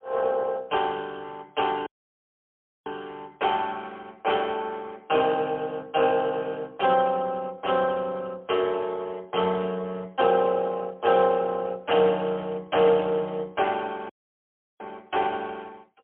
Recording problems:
phone line; 220 Hz to 3.4 kHz, AMR-NB, then MP3
dropout; at 2 s for 1 s and at 14 s for 0.5 s

